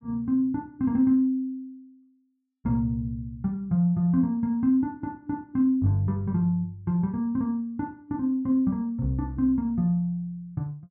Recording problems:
none

